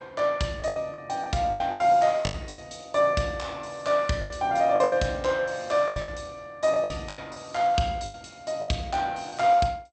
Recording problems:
codec artefacts; MP2, log-spectral distance 2 dB, nothing above 8.5 kHz
packet loss; 12% of the sound replaced, filled with the last packet

